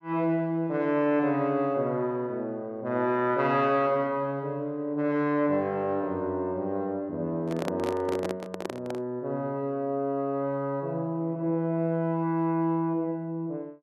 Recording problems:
handling noise; from 7.5 to 9 s; peak 0 dB vs average level

